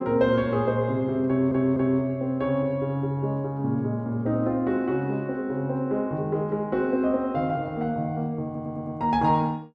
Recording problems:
audio stuttering; at 1.5 s and at 8.5 s

